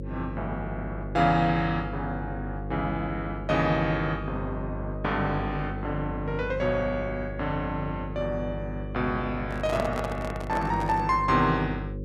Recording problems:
hum; 50 Hz, harmonics up to 550 Hz, SNR 7 dB
handling noise; from 9.5 to 11 s; peak 0 dB vs average level

